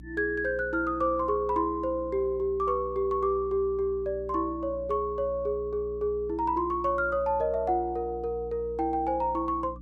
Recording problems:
hum; 60 Hz, harmonics up to 300 Hz, SNR 16 dB

